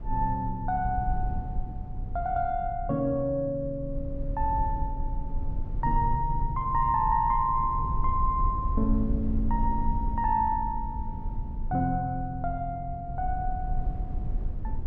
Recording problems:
rumble; below 62 Hz, SNR 6 dB

